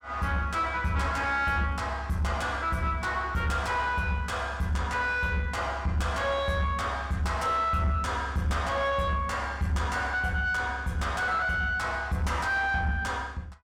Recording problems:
distortion; soft clipping, signal-to-distortion ratio 11 dB

